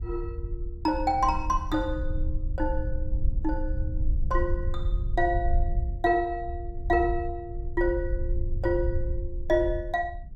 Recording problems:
rumble; below 66 Hz, SNR 4 dB

